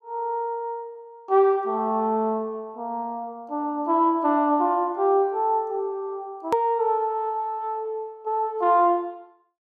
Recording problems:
hard cut with a click; at 6.5 s

